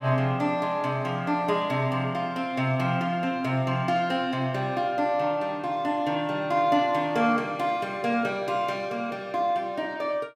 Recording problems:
none

